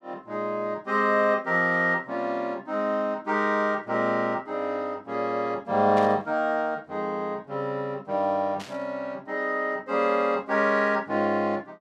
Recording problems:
static burst; at 6 s and at 8.5 s; peak -9 dB vs average level

